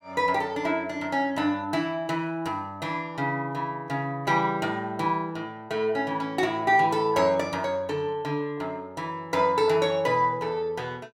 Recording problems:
none

